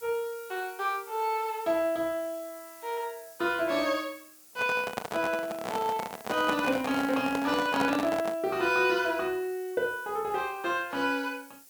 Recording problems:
background hiss; SNR 20 dB
handling noise; from 4.5 to 8.5 s; peak +3 dB vs average level

